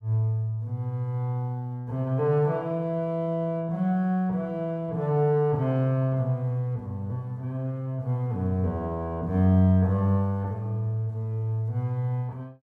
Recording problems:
none

